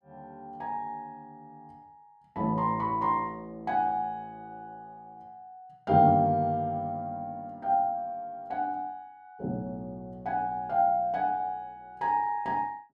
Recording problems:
none

